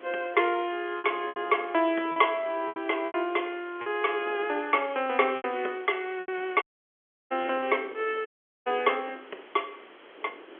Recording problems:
phone line; 300 Hz to 3.3 kHz, G.711
hiss; SNR 24 dB
wind on the microphone; below 630 Hz, SNR 20 dB
packet loss; 7% of the sound replaced, filled with repeated pitch periods
dropout; at 6.5 s for 0.5 s and at 8.5 s

